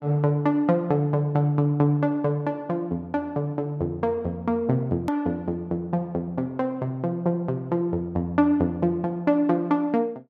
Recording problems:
hard cut with a click; at 5 s

